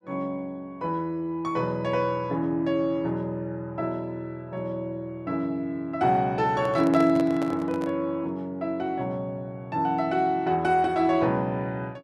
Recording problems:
handling noise; from 6.5 to 8 s; peak -4 dB vs average level

